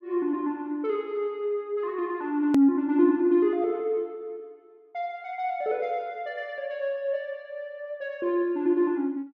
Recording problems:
hard cut with a click; at 2.5 s

